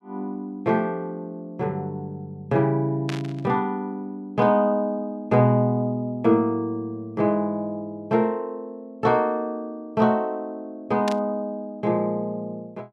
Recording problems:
static burst; at 3 s and at 11 s; peak -4 dB vs average level

